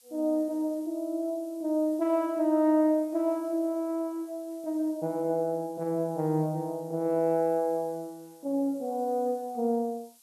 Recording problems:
hiss; SNR 27 dB

